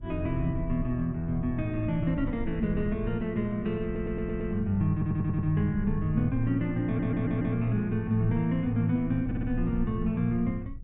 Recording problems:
low-frequency rumble; below 78 Hz, SNR 12 dB
audio stuttering; 4 times, first at 4 s

